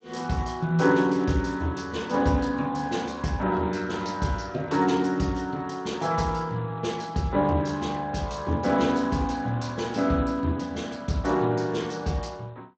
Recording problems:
lossy codec; Speex, log-spectral distance 4 dB, nothing above 7.3 kHz

